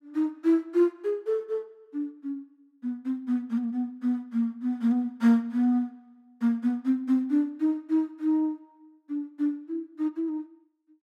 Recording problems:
none

